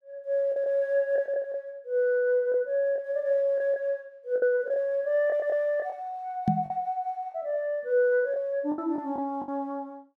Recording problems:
lost packets; 7% of the sound replaced, filled with the last packet
knock on the microphone; at 6.5 s; peak +5 dB vs average level

